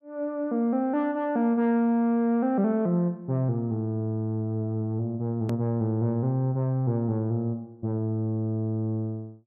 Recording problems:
click at an edit; at 5.5 s

